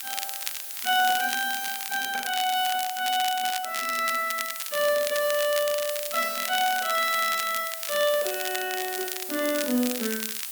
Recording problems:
background hiss; slope +4 dB per octave, SNR 7 dB
crackling; vinyl, SNR 8 dB

